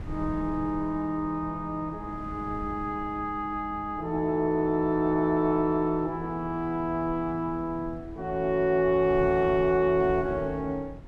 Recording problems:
wind on the microphone; below 170 Hz, SNR 16 dB

